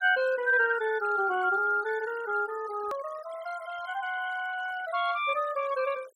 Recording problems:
denoising artefacts; signal-to-artefact ratio 18 dB
hard cut with a click; at 3 s

